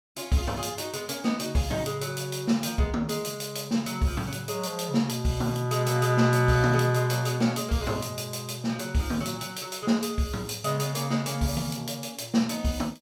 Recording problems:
none

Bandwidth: 17.5 kHz